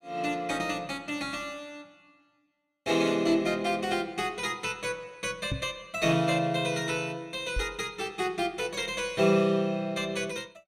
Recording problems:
microphone thump; at 5.5 s and at 7.5 s; peak 0 dB vs average level

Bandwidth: 15.5 kHz